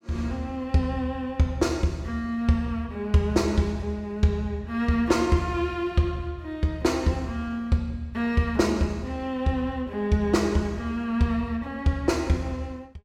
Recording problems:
none

